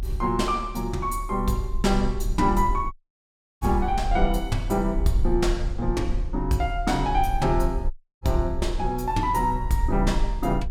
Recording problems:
low-frequency rumble; below 46 Hz, strongest tone 38 Hz, SNR 5 dB
audio cutting out; at 3 s for 0.5 s and at 8 s

